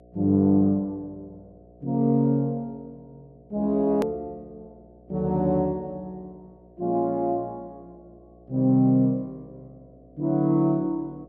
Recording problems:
mains hum; 60 Hz, harmonics up to 720 Hz, SNR 29 dB
click at an edit; at 4 s

